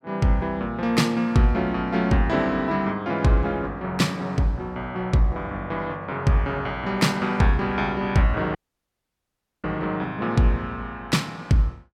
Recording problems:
dropout; at 8.5 s for 1 s

